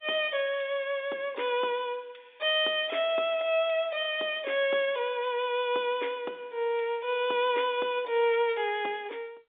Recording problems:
telephone audio; 320 Hz to 3.7 kHz, G.711

